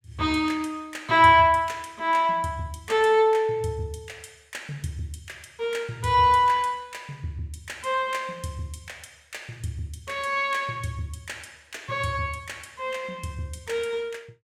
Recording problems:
none

